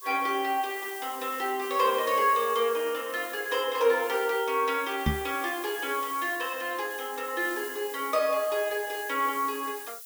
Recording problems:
hiss; SNR 12 dB
knock on the microphone; at 5 s; peak +5 dB vs average level

